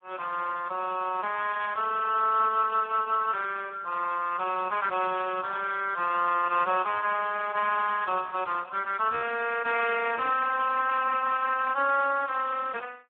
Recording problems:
phone line; 300 Hz to 2.9 kHz, Speex

